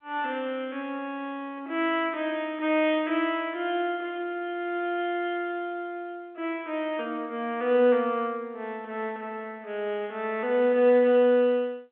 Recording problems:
phone line; 260 Hz to 3.4 kHz, G.711

